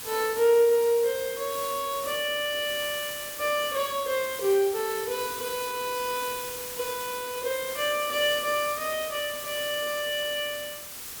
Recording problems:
hiss; slope 0 dB per octave, SNR 8 dB

